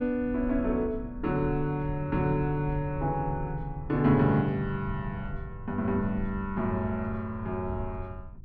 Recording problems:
rumble; below 100 Hz, SNR 12 dB

